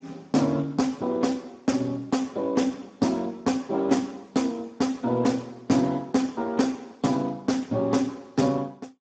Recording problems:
codec artefacts; Speex, log-spectral distance 4 dB, nothing above 7.6 kHz

